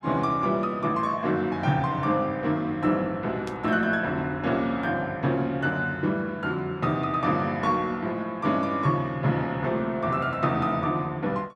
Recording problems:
static burst; at 3.5 s; peak -12 dB vs average level

